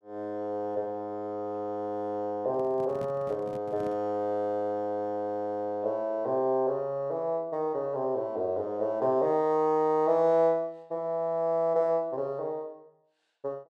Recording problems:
handling noise; from 2.5 to 4 s; peak -9 dB vs average level

